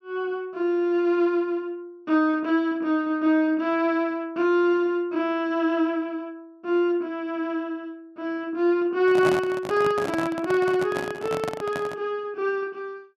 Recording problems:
microphone handling noise; from 9 to 12 s; peak 0 dB vs average level

